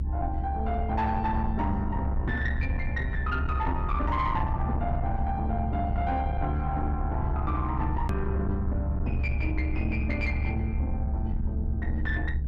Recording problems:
distorted audio; soft clipping, signal-to-distortion ratio 11 dB
low-frequency rumble; below 78 Hz, strongest tone 70 Hz, SNR 0 dB
hard cut with a click; at 8 s

